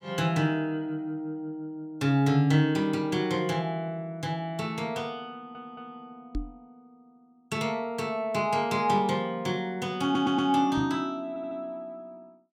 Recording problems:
stutter; at 5.5 s, at 10 s and at 11 s
microphone thump; at 6.5 s and at 11 s; peak -2 dB vs average level

